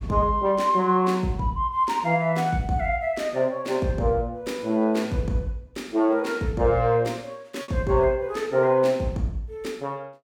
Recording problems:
lost packets; 0.6% of the sound replaced, filled with repeated pitch periods

